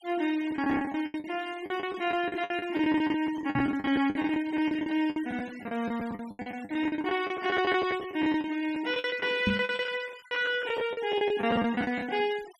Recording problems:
denoising artefacts; signal-to-artefact ratio 20 dB
lost packets; 20% of the sound replaced, filled with the last packet
knock on the microphone; at 3.5 s and at 9.5 s; peak +5 dB vs average level

